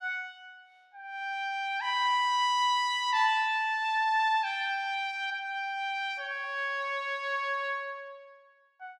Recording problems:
none

